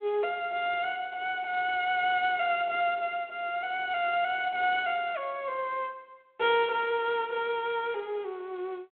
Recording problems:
phone line; 300 Hz to 3.6 kHz, G.726

